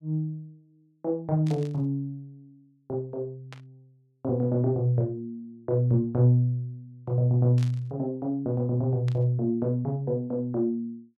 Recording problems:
static burst; 4 times, first at 1.5 s; peak -12 dB vs average level

